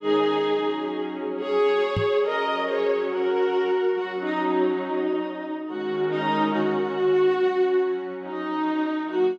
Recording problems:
microphone bump; at 2 s; peak +1 dB vs average level

